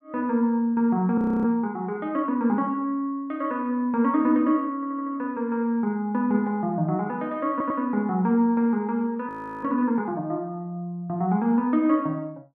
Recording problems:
audio freezing; at 1 s and at 9.5 s
stutter; at 5 s and at 7.5 s

